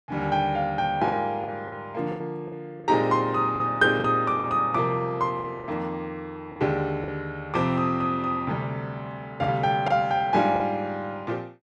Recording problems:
packet loss; 6% of the sound replaced, filled with the last packet

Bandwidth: 12 kHz